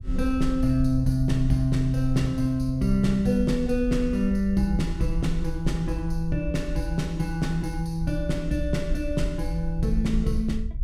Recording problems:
rumble; below 58 Hz, SNR 8 dB

